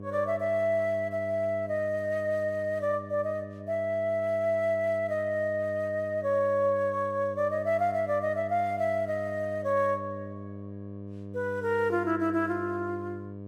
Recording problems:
hum; 50 Hz, harmonics up to 700 Hz, SNR 13 dB

